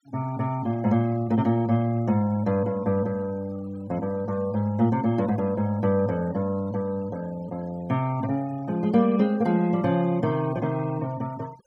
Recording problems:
noise reduction artefacts; signal-to-artefact ratio 24 dB

